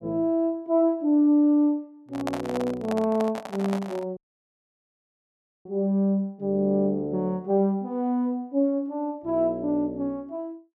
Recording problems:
microphone handling noise; from 2 to 4 s; peak -1 dB vs average level
audio cutting out; at 4 s for 1.5 s

